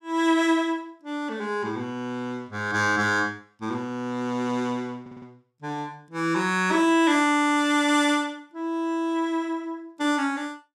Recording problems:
stutter; at 5 s

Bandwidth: 16.5 kHz